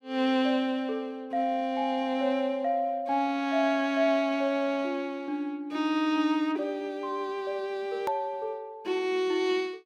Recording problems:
click at an edit; at 8 s

